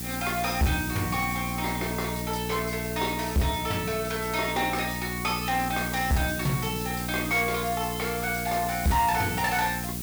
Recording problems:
distortion; soft clipping, signal-to-distortion ratio 11 dB
electrical hum; 60 Hz, harmonics up to 780 Hz, SNR 7 dB
background hiss; slope 0 dB per octave, SNR 8 dB

